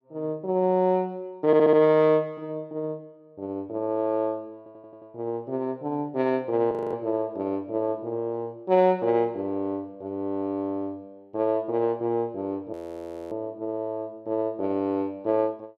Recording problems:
stutter; at 1.5 s and at 4.5 s
audio freezing; at 6.5 s and at 13 s for 0.5 s

